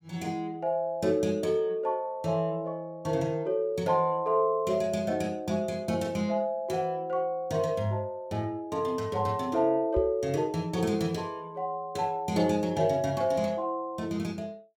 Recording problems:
knock on the microphone; at 10 s; peak -1 dB vs average level

